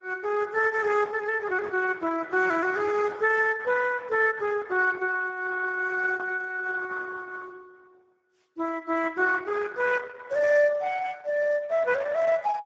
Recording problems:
lossy compression; Opus, then Speex, log-spectral distance 4 dB

